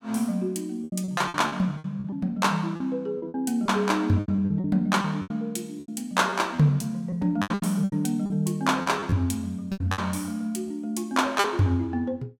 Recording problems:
lost packets; 12% of the sound replaced, filled with repeated pitch periods

